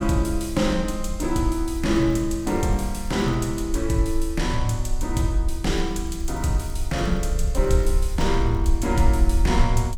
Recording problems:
rumble; below 60 Hz, SNR 4 dB
crackling; from 2 to 3.5 s and from 5.5 to 9 s; loose cable, SNR 29 dB

